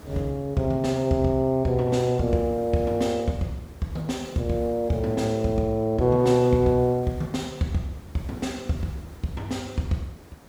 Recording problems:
background hiss; SNR 23 dB

